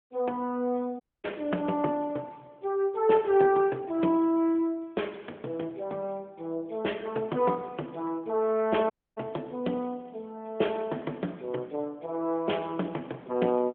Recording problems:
phone line; 220 Hz to 3.4 kHz, AMR-NB
audio cutting out; at 1 s and at 9 s

